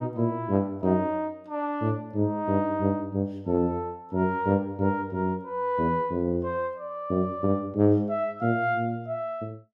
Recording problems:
none

